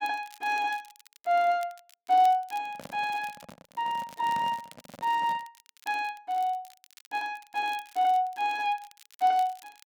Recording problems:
crackling; vinyl, SNR 24 dB
microphone handling noise; from 2.5 to 5.5 s; peak -10 dB vs average level

